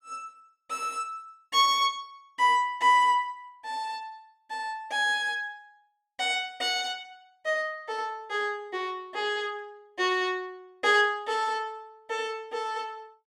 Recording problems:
none

